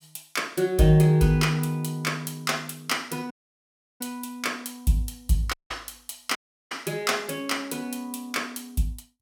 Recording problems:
audio cutting out; at 3.5 s for 0.5 s, at 5.5 s and at 6.5 s

